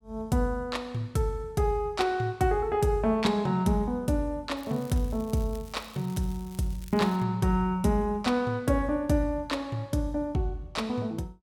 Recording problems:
crackle; from 4.5 to 7.5 s; loose cable, SNR 23 dB

